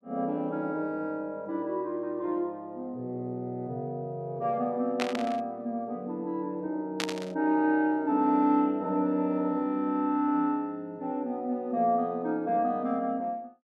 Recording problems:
static burst; at 5 s and at 7 s; peak +3 dB vs average level

